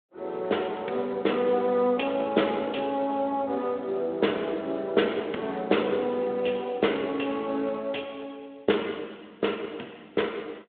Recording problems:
telephone audio; 280 Hz to 3.7 kHz, Speex

